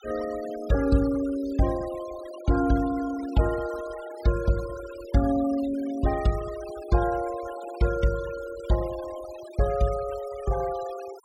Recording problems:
noise reduction artefacts; signal-to-artefact ratio 16 dB

